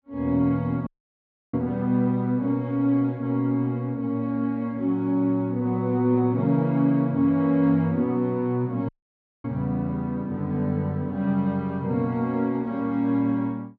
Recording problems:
treble cut off; nothing above 7.1 kHz
dropout; at 1 s for 0.5 s and at 9 s for 0.5 s

